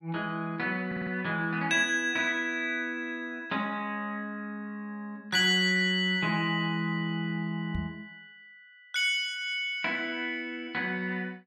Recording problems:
audio stuttering; at 1 s
microphone thump; at 8 s; peak -2 dB vs average level

